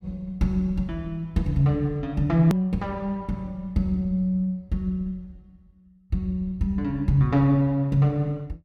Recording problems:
click at an edit; at 2.5 s

